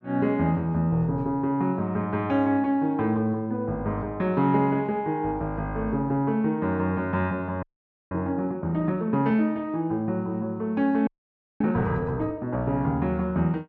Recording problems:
frozen audio; at 7.5 s and at 11 s for 0.5 s

